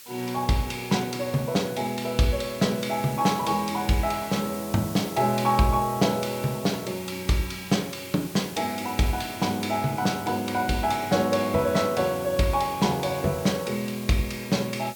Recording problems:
hiss; SNR 15 dB

